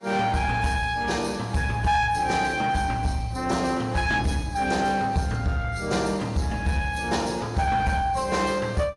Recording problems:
lossy codec; AAC, log-spectral distance 3 dB, nothing above 10.7 kHz
distorted audio; soft clipping, signal-to-distortion ratio 11 dB

